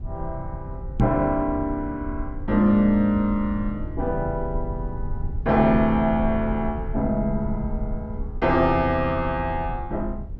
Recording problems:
rumble; below 80 Hz, SNR 10 dB
microphone thump; at 1 s; peak +6 dB vs average level

